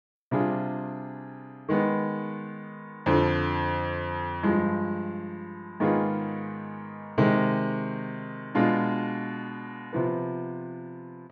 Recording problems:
none

